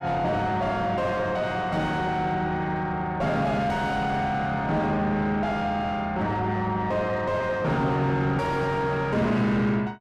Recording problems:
distortion; soft clipping, signal-to-distortion ratio 6 dB

